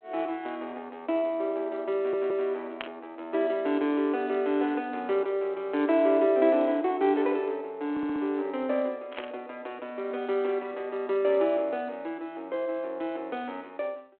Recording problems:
telephone audio; 260 Hz to 3.4 kHz, G.726
audio stuttering; at 2 s and at 8 s
burst of static; at 3 s and at 9 s; peak -5 dB vs average level

